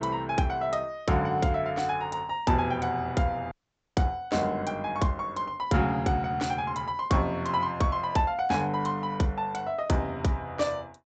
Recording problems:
treble missing; nothing above 8 kHz
audio cutting out; at 3.5 s

